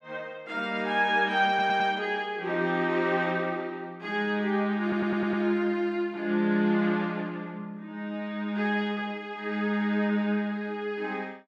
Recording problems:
stutter; at 1.5 s and at 5 s

